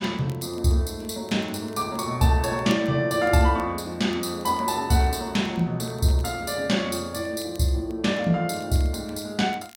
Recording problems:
crackle; vinyl, SNR 28 dB

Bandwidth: 16.5 kHz